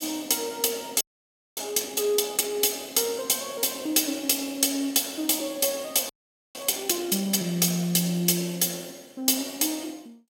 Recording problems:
frozen audio; at 1 s for 0.5 s and at 6 s

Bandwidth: 16.5 kHz